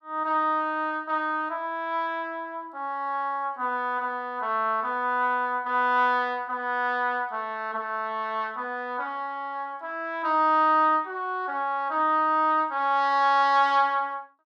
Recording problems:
none

